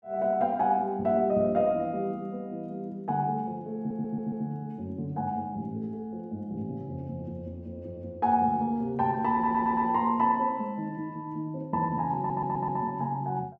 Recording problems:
audio stuttering; at 4 s, at 9.5 s and at 12 s

